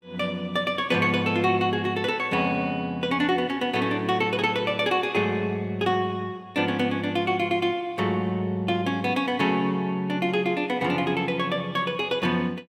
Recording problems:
none

